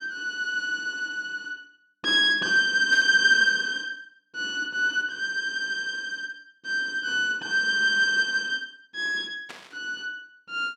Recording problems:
static burst; at 3 s and at 9.5 s; peak -12 dB vs average level

